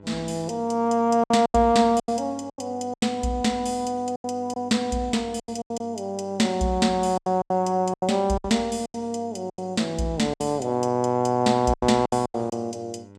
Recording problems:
hum; 50 Hz, harmonics up to 1.5 kHz, SNR 24 dB
packet loss; 11% of the sound replaced, filled with silence

